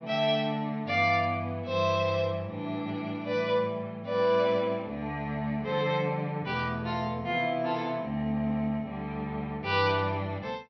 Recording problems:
treble cut off; nothing above 5.9 kHz

